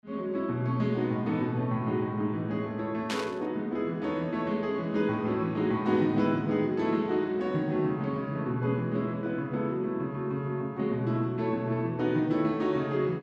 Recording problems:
burst of static; at 3 s; peak -1 dB vs average level

